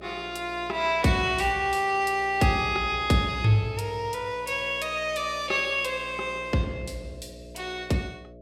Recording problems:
electrical hum; 60 Hz, harmonics up to 660 Hz, SNR 20 dB

